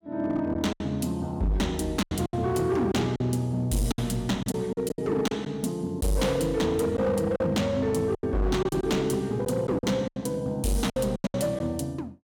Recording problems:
distortion; hard clipping, signal-to-distortion ratio 11 dB
lost packets; 9% of the sound replaced, filled with silence

